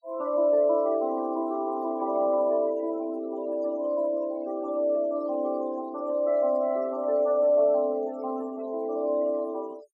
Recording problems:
noise reduction artefacts; signal-to-artefact ratio 23 dB

